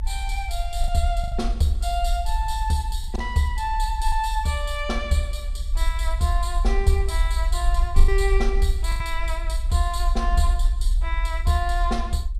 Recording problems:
low-frequency rumble; below 54 Hz, SNR 0 dB
lost packets; 3% of the sound replaced, filled with the last packet

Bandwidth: 14 kHz